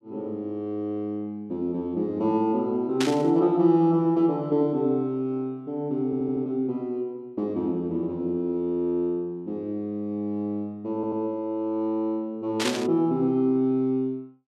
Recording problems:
burst of static; at 3 s and at 13 s; peak +2 dB vs average level
stutter; at 6 s and at 11 s

